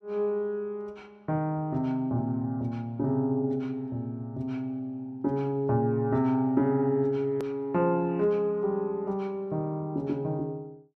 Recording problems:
hard cut with a click; at 7.5 s

